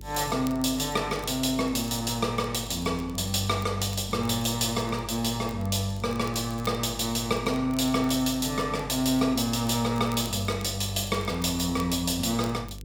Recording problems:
electrical hum; 50 Hz, harmonics up to 500 Hz, SNR 17 dB
crackling; vinyl, SNR 22 dB

